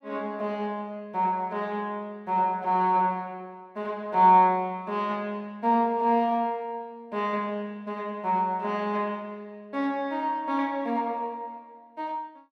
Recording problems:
none

